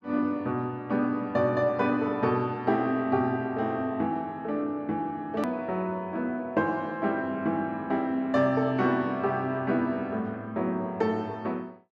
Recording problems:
hard cut with a click; at 5.5 s

